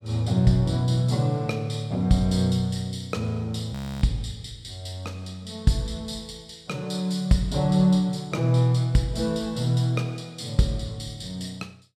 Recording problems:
audio freezing; at 3.5 s

